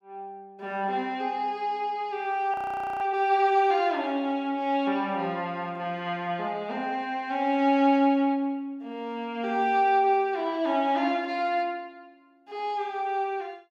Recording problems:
frozen audio; at 2.5 s

